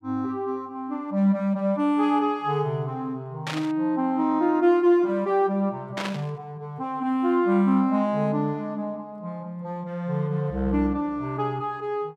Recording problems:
static burst; at 3.5 s and at 6 s; peak -2 dB vs average level

